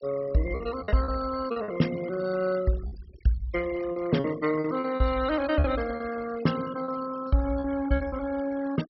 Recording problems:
treble missing; nothing above 5.5 kHz
noise reduction artefacts; signal-to-artefact ratio 15 dB
packet loss; 8% of the sound replaced, filled with repeated pitch periods

